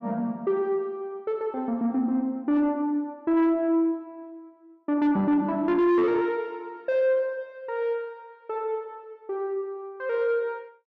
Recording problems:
distorted audio; soft clipping, signal-to-distortion ratio 10 dB

